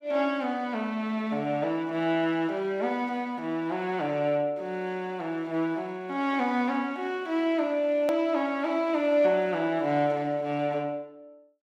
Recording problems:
hard cut with a click; at 8 s

